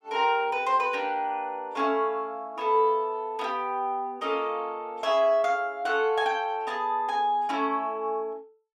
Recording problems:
none

